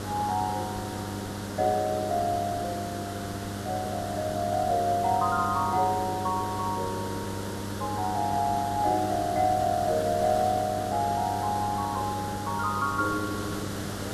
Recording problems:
mains hum; 50 Hz, harmonics up to 1 kHz, SNR 9 dB
hiss; SNR 9 dB

